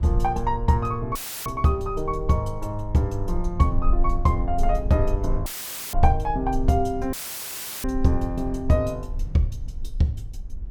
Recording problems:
rumble; below 46 Hz, strongest tone 18 Hz, SNR 7 dB
dropout; at 1 s, at 5.5 s and at 7 s for 0.5 s; filled with static

